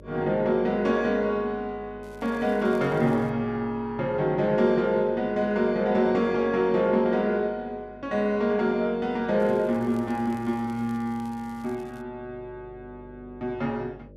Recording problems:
hum; 50 Hz, harmonics up to 600 Hz, SNR 24 dB
crackling; from 2 to 3.5 s and from 9.5 to 12 s; loose cable, SNR 30 dB

